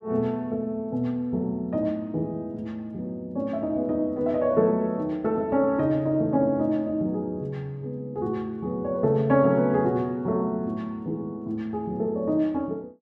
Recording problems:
none

